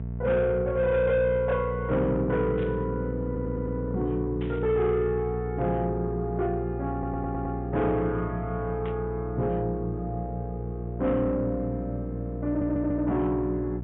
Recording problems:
low-pass filter; nothing above 3.6 kHz
distorted audio; soft clipping, signal-to-distortion ratio 11 dB
mains hum; 60 Hz, harmonics up to 660 Hz, SNR 6 dB
burst of static; at 2.5 s, at 4.5 s and at 9 s; peak -12 dB vs average level
audio stuttering; at 3.5 s, at 7 s and at 12 s

